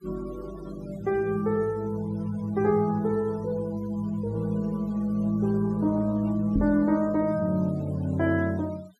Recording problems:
denoising artefacts; signal-to-artefact ratio 24 dB
knock on the microphone; at 6.5 s; peak +2 dB vs average level

